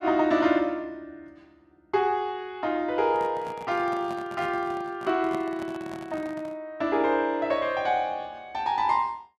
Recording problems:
microphone handling noise; from 3 to 6.5 s; peak -7 dB vs average level

